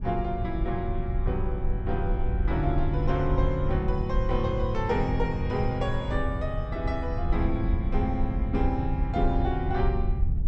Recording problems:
low-frequency rumble; below 80 Hz, SNR 1 dB

